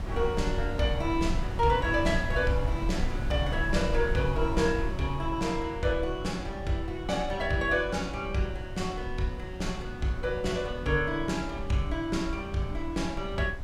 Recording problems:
wind noise; below 92 Hz, SNR 6 dB

